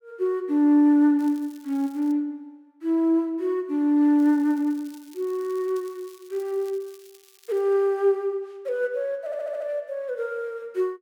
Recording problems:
crackling; at 1 s and from 4 to 7.5 s; loose cable, SNR 28 dB
stutter; at 9.5 s

